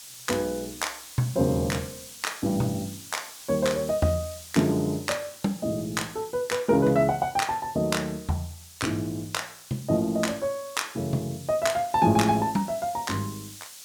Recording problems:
hiss; slope +3 dB per octave, SNR 16 dB

